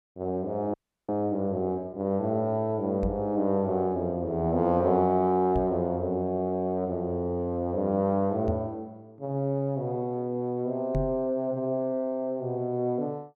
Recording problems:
frozen audio; at 0.5 s
knock on the microphone; 4 times, first at 3 s; peak +1 dB vs average level

